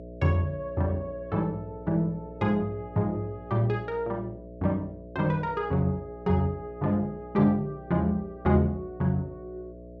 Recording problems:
hum; 60 Hz, harmonics up to 660 Hz, SNR 16 dB

